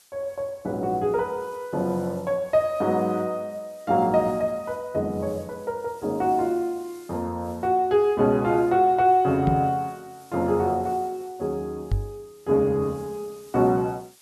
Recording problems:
background hiss; slope +1 dB per octave, SNR 28 dB
microphone bump; at 9.5 s and at 12 s; peak +3 dB vs average level

